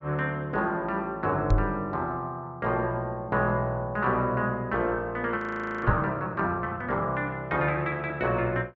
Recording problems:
treble missing; nothing above 8 kHz
knock on the microphone; at 1.5 s and at 6 s; peak +8 dB vs average level
frozen audio; at 5.5 s

